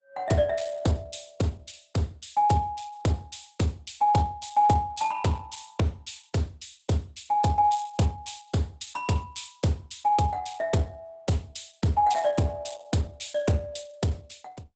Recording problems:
lossy compression; Opus, log-spectral distance 6 dB, nothing above 8 kHz

